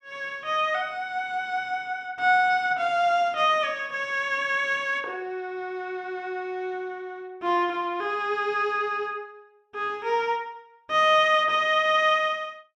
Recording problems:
none

